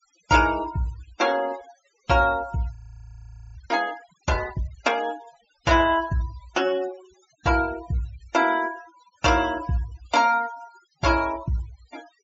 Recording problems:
treble cut off; nothing above 7.5 kHz
denoising artefacts; signal-to-artefact ratio 18 dB
audio freezing; at 3 s for 1 s

